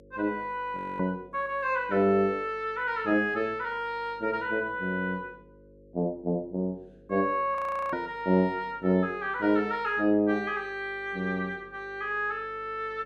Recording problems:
electrical hum; 50 Hz, harmonics up to 550 Hz, SNR 26 dB
audio freezing; at 1 s and at 7.5 s

